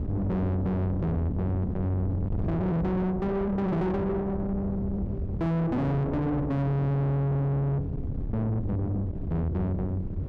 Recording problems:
distorted audio; soft clipping, signal-to-distortion ratio 6 dB
hum; 60 Hz, harmonics up to 360 Hz, SNR 19 dB
wind on the microphone; below 260 Hz, SNR 5 dB

